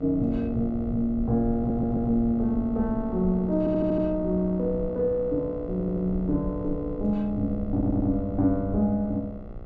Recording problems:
hum; 60 Hz, harmonics up to 1.5 kHz, SNR 17 dB
rumble; below 98 Hz, SNR 12 dB
stutter; 4 times, first at 1.5 s

